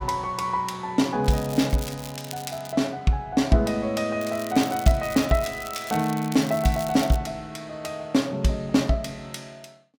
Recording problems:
crackling; from 1 to 2.5 s and from 4 to 7 s; loose cable, SNR 14 dB

